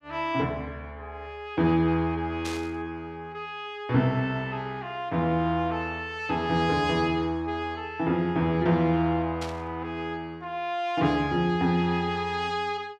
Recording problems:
burst of static; at 2.5 s and at 9.5 s; peak -5 dB vs average level

